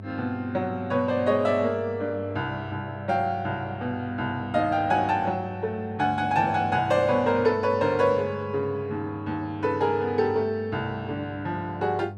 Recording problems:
electrical hum; 50 Hz, harmonics up to 900 Hz, SNR 13 dB

